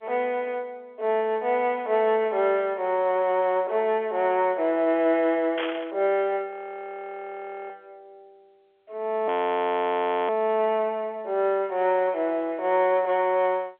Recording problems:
phone line; 280 Hz to 3.4 kHz, G.711
burst of static; at 5.5 s; peak -3 dB vs average level
audio freezing; at 6.5 s for 1 s and at 9.5 s for 1 s

